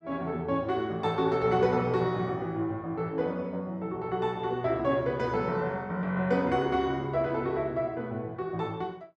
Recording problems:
none

